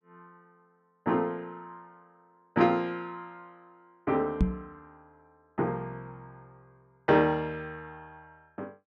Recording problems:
knock on the microphone; at 4.5 s; peak +8 dB vs average level

